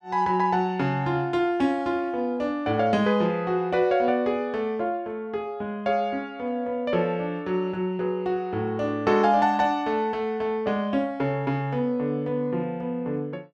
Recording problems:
none

